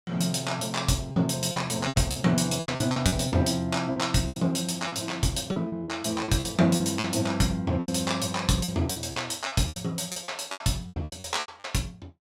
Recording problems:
packet loss; 14% of the sound replaced, filled with repeated pitch periods

